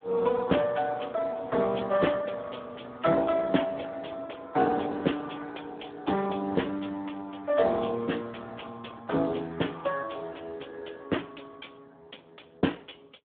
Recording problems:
phone line; 220 Hz to 3.4 kHz, Speex

